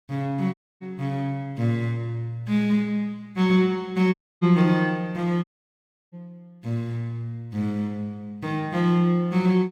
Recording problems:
dropout; at 0.5 s, at 4 s and at 5.5 s for 0.5 s

